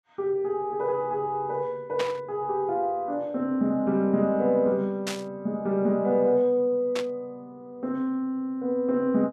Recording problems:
burst of static; at 2 s, at 5 s and at 7 s; peak -1 dB vs average level

